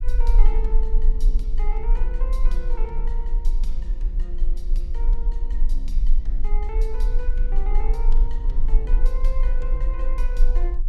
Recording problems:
low-frequency rumble; below 34 Hz, strongest tone 22 Hz, SNR -13 dB

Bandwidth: 14.5 kHz